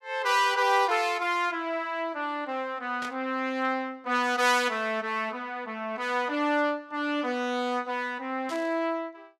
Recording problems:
burst of static; at 3 s and at 8.5 s; peak -8 dB vs average level

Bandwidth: 15.5 kHz